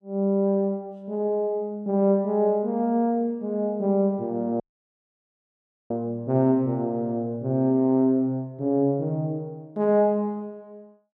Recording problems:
dropout; at 4.5 s for 1.5 s

